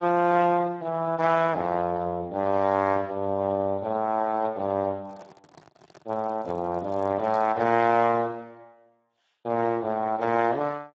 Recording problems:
lossy codec; Speex, log-spectral distance 3 dB
microphone handling noise; from 5 to 7.5 s; peak -15 dB vs average level

